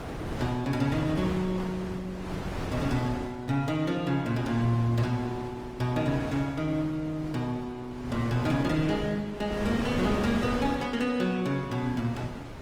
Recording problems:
codec artefacts; Opus, log-spectral distance 2 dB, nothing above 19 kHz
wind noise; below 790 Hz, SNR 8 dB

